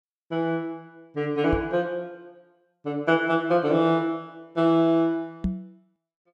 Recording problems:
knock on the microphone; at 1.5 s and at 5.5 s; peak +1 dB vs average level

